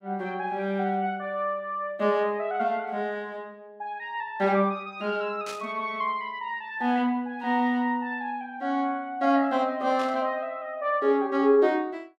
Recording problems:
static burst; at 5.5 s and at 10 s; peak -8 dB vs average level

